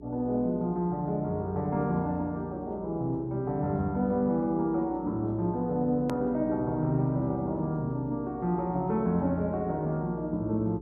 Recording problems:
hum; 60 Hz, harmonics up to 420 Hz, SNR 18 dB
click at an edit; at 6 s

